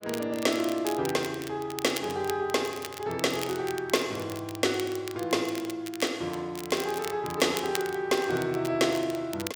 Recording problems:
crackle; vinyl, SNR 12 dB

